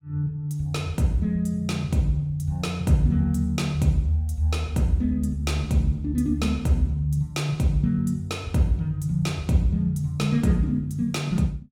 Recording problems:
none

